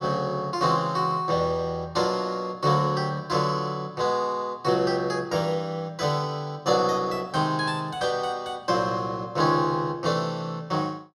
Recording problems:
none

